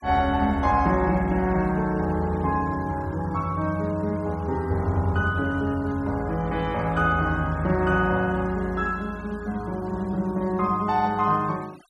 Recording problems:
noise reduction artefacts; signal-to-artefact ratio 24 dB

